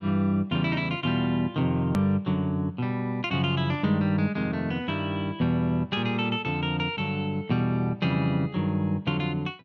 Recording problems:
edit click; at 2 s

